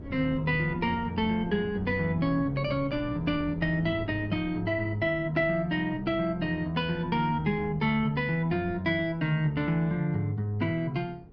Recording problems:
wind noise; below 280 Hz, SNR 15 dB

